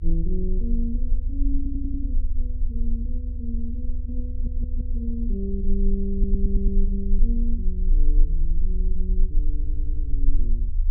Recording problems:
low-frequency rumble; below 36 Hz, strongest tone 18 Hz, SNR -7 dB
audio stuttering; 4 times, first at 1.5 s

